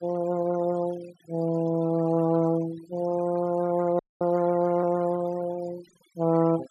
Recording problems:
noise reduction artefacts; signal-to-artefact ratio 19 dB
frozen audio; at 4 s

